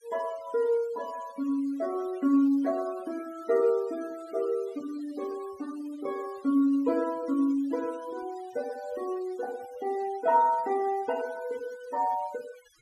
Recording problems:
denoising artefacts; signal-to-artefact ratio 22 dB

